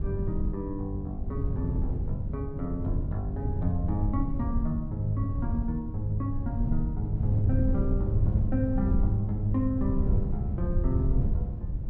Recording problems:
wind on the microphone; below 110 Hz, SNR 0 dB

